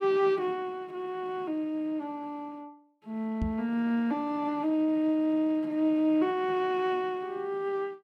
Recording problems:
microphone thump; at 3.5 s; peak +1 dB vs average level

